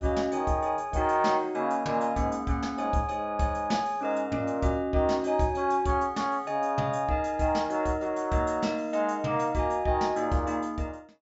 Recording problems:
treble missing; nothing above 8 kHz

